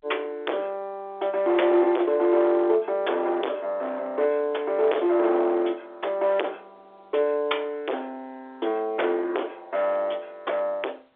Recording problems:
phone line; 300 Hz to 3.9 kHz, G.711
distorted audio; hard clipping, signal-to-distortion ratio 4 dB

